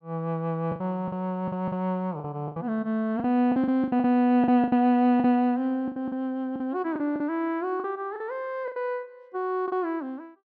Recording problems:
packet loss; 12% of the sound replaced, filled with the last packet

